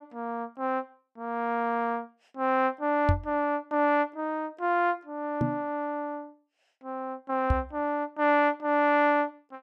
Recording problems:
knock on the microphone; at 3 s, at 5.5 s and at 7.5 s; peak +6 dB vs average level

